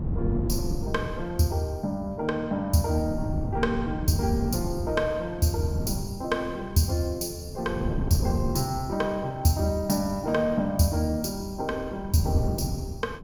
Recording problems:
wind on the microphone; below 190 Hz, SNR 6 dB

